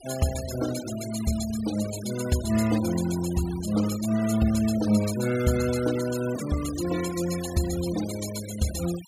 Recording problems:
denoising artefacts; signal-to-artefact ratio 12 dB

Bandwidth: 15.5 kHz